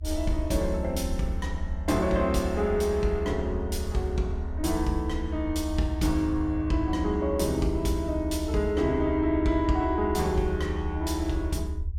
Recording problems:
rumble; below 78 Hz, SNR 6 dB

